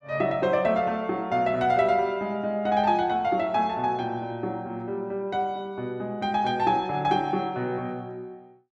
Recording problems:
none

